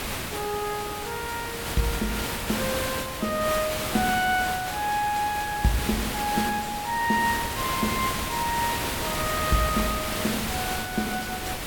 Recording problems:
background hiss; slope -3 dB per octave, SNR 2 dB

